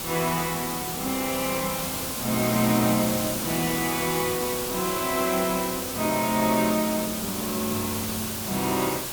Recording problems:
background hiss; SNR 2 dB

